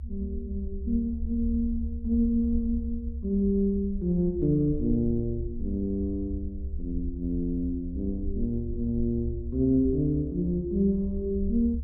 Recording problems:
rumble; below 72 Hz, SNR 8 dB

